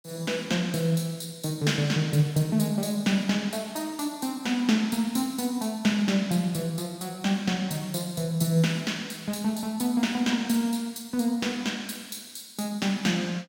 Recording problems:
none

